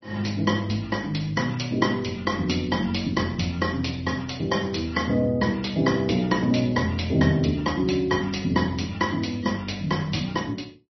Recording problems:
lossy compression; MP3, log-spectral distance 5 dB, nothing above 5.8 kHz

